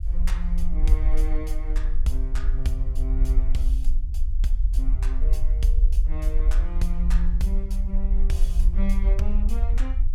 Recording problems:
rumble; below 46 Hz, SNR -9 dB

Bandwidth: 18 kHz